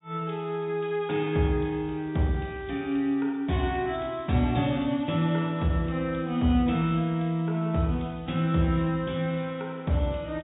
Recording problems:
treble missing; nothing above 4 kHz

